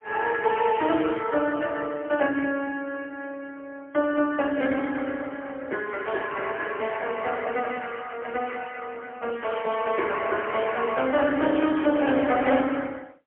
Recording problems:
telephone audio; 240 Hz to 3.2 kHz, AMR-NB, then MP3

